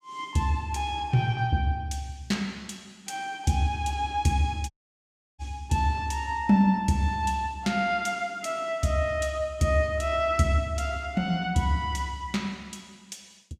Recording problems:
audio cutting out; at 4.5 s for 0.5 s

